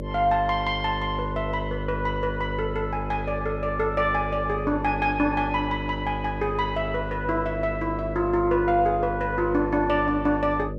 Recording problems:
hum; 50 Hz, harmonics up to 600 Hz, SNR 7 dB

